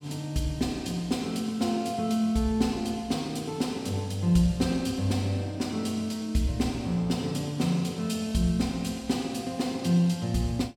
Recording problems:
none

